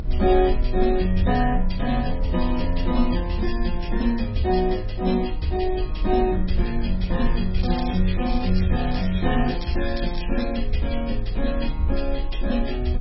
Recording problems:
lossy compression; MP2, then MP3, log-spectral distance 4 dB, nothing above 5.5 kHz
rumble; below 42 Hz, strongest tone 22 Hz, SNR 5 dB
wind on the microphone; below 100 Hz, SNR 16 dB
crackle; from 7.5 to 10 s; loose cable, SNR 14 dB

